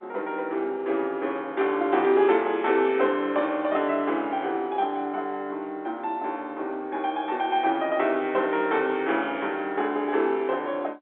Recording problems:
phone line; 240 Hz to 3.8 kHz, G.711

